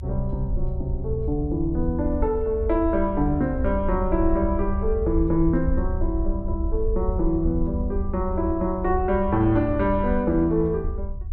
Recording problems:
low-frequency rumble; below 74 Hz, SNR 5 dB

